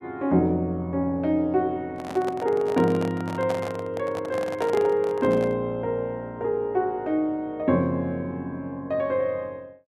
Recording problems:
handling noise; from 2 to 5.5 s; peak -3 dB vs average level

